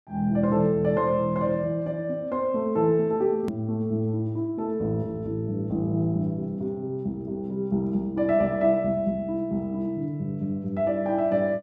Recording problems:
click at an edit; at 3.5 s

